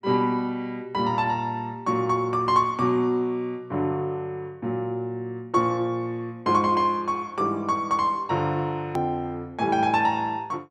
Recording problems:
hard cut with a click; at 9 s

